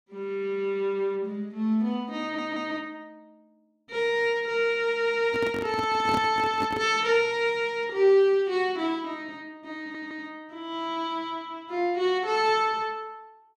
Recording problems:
stutter; at 2 s and at 10 s
microphone handling noise; from 5.5 to 7 s; peak 0 dB vs average level

